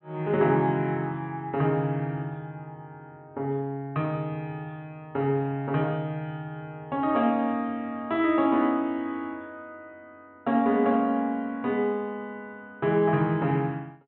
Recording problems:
treble cut off; nothing above 3.9 kHz

